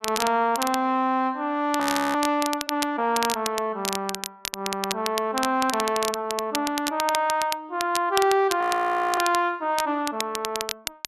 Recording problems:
crackling; vinyl, SNR 7 dB
frozen audio; at 2 s and at 8.5 s for 0.5 s

